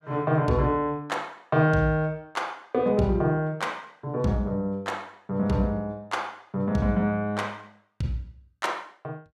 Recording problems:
none

